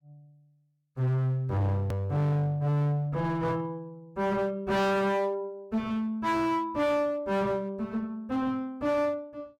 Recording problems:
distortion; hard clipping, uneven, signal-to-distortion ratio 6 dB
click at an edit; at 2 s

